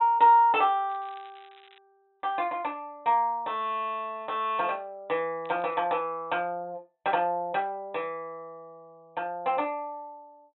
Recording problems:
treble cut off; nothing above 3.9 kHz
crackle; at 1 s and at 5.5 s; loose cable, SNR 28 dB

